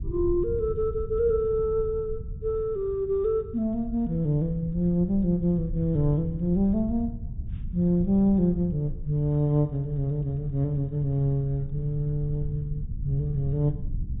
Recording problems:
treble cut off; nothing above 4 kHz
rumble; below 100 Hz, SNR 11 dB

